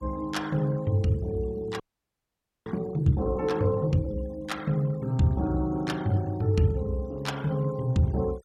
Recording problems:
noise reduction artefacts; signal-to-artefact ratio 24 dB
audio freezing; at 2 s for 1 s

